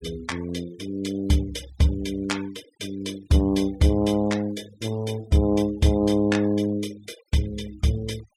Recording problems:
denoising artefacts; signal-to-artefact ratio 22 dB

